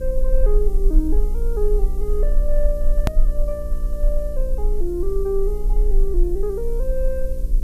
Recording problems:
hum; 60 Hz, harmonics up to 600 Hz, SNR 8 dB
background hiss; slope +4 dB per octave, SNR 23 dB
low-frequency rumble; below 36 Hz, strongest tone 26 Hz, SNR -3 dB
click at an edit; at 3 s

